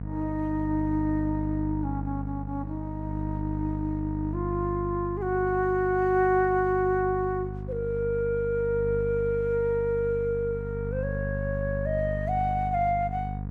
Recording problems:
mains hum; 50 Hz, harmonics up to 700 Hz, SNR 6 dB

